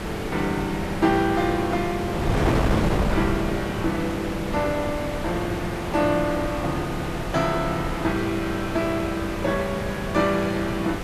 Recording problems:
background hiss; slope -5 dB per octave, SNR 9 dB
wind noise; below 570 Hz, SNR 4 dB

